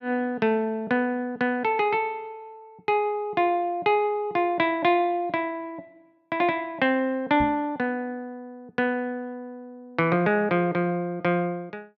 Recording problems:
knock on the microphone; at 7.5 s; peak -3 dB vs average level

